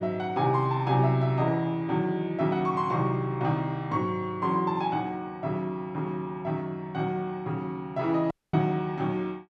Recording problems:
audio cutting out; at 8.5 s

